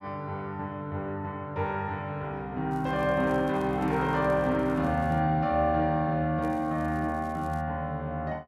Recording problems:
crackle; from 2.5 to 5 s and from 6.5 to 7.5 s; loose cable, SNR 30 dB

